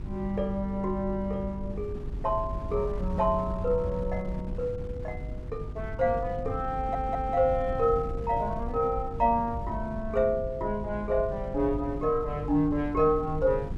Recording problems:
hum; 50 Hz, harmonics up to 400 Hz, SNR 14 dB
wind noise; below 110 Hz, SNR 10 dB
stutter; at 7 s

